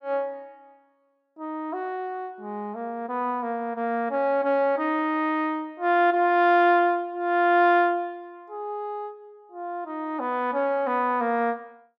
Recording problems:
none

